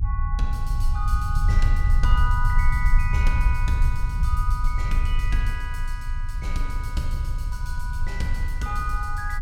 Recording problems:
low-frequency rumble; below 64 Hz, strongest tone 26 Hz, SNR -5 dB

